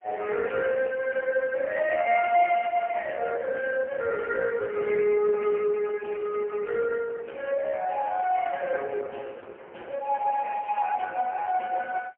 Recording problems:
phone line; 280 Hz to 2.8 kHz, AMR-NB, then MP3

